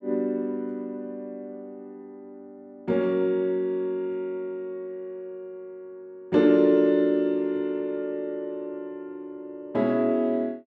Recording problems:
none

